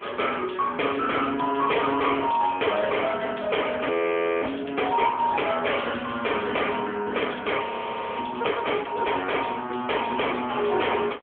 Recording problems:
telephone audio; 260 Hz to 3.3 kHz, AMR-NB
distorted audio; hard clipping, signal-to-distortion ratio 12 dB
frozen audio; at 4 s for 0.5 s and at 7.5 s for 0.5 s

